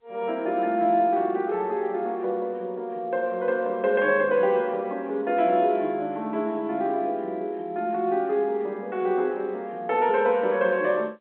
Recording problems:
telephone audio; 240 Hz to 3.3 kHz, G.711

